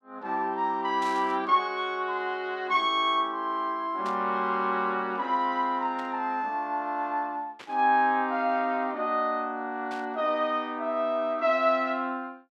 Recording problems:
burst of static; 5 times, first at 1 s; peak -12 dB vs average level

